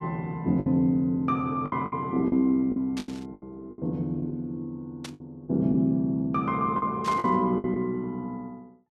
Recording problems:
lost packets; 9% of the sound replaced, filled with the last packet
static burst; at 3 s, at 5 s and at 7 s; peak -7 dB vs average level

